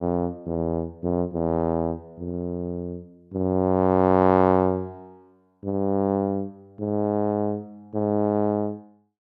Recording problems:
none

